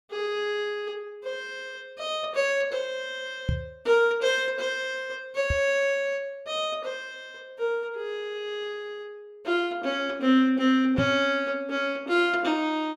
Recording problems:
microphone bump; at 3.5 s, at 5.5 s and at 11 s; peak +3 dB vs average level

